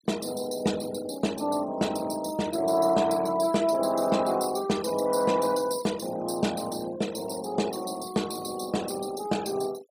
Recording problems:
noise reduction artefacts; signal-to-artefact ratio 15 dB

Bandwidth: 15.5 kHz